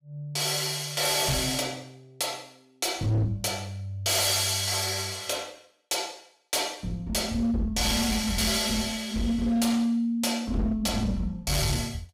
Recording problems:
distorted audio; hard clipping, signal-to-distortion ratio 10 dB

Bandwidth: 15.5 kHz